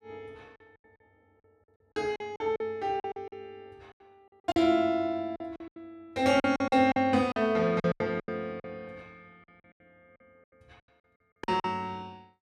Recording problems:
packet loss; 12% of the sound replaced, filled with silence

